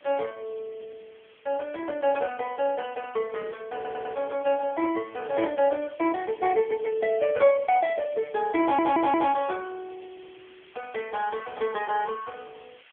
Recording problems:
phone line; 300 Hz to 3.3 kHz, AMR-NB
hiss; SNR 27 dB
stutter; at 4 s and at 8.5 s

